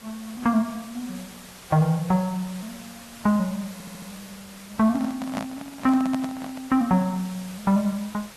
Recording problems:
codec artefacts; AAC, log-spectral distance 5 dB, nothing above 13.1 kHz
hiss; slope -2 dB per octave, SNR 18 dB
stutter; at 3.5 s
handling noise; from 5 to 6.5 s; peak -1 dB vs average level

